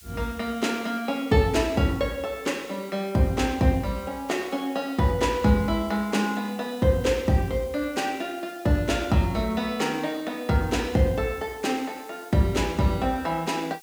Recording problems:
background hiss; slope +4 dB per octave, SNR 23 dB

